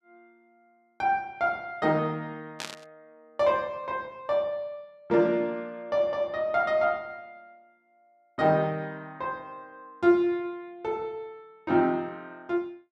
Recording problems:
static burst; at 2.5 s; peak -3 dB vs average level

